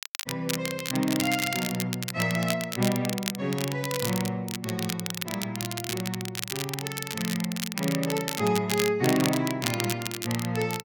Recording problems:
crackle; vinyl, SNR 4 dB

